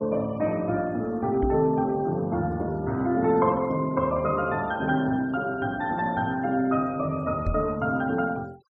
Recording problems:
noise reduction artefacts; signal-to-artefact ratio 27 dB
microphone bump; at 1.5 s and at 7.5 s; peak 0 dB vs average level

